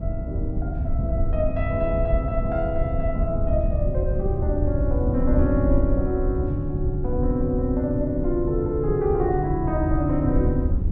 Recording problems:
rumble; below 110 Hz, SNR 2 dB
wind on the microphone; below 80 Hz, SNR 7 dB

